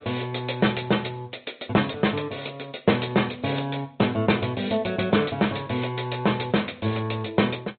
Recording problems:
low-pass filter; nothing above 4 kHz
lossy compression; MP3, log-spectral distance 6 dB

